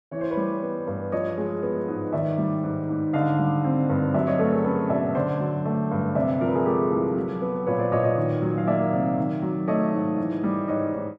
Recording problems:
none

